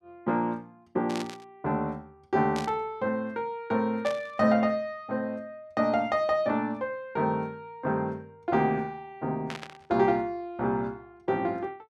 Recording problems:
burst of static; 4 times, first at 1 s; peak -4 dB vs average level

